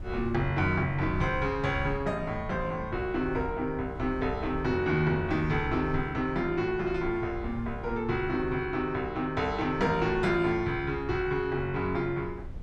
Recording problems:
wind noise; below 94 Hz, SNR 13 dB

